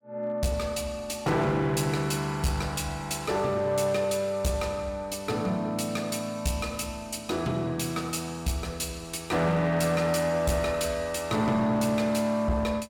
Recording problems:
distorted audio; hard clipping, uneven, signal-to-distortion ratio 11 dB

